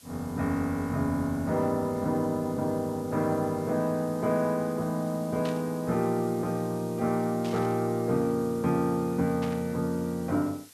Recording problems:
background hiss; slope +1 dB per octave, SNR 22 dB
static burst; at 5.5 s, at 7.5 s and at 9.5 s; peak -8 dB vs average level

